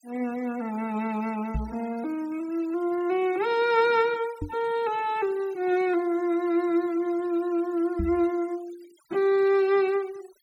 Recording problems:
noise reduction artefacts; signal-to-artefact ratio 23 dB
microphone bump; at 1.5 s, at 4.5 s and at 8 s; peak -1 dB vs average level

